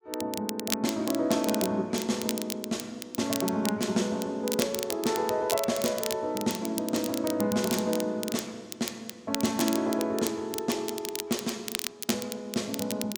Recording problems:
crackle; vinyl, SNR 6 dB

